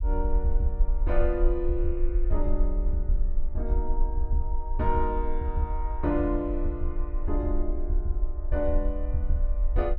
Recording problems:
low-frequency rumble; below 42 Hz, strongest tone 22 Hz, SNR 0 dB

